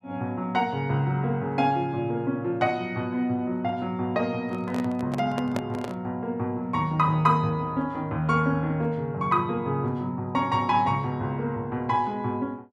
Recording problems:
handling noise; from 4.5 to 6 s; peak 0 dB vs average level

